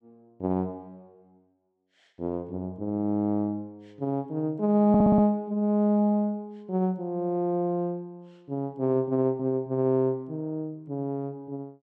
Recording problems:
stutter; at 5 s

